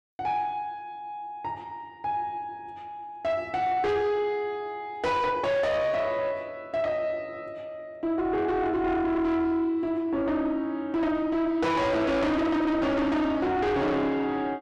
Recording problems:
distorted audio; soft clipping, signal-to-distortion ratio 7 dB

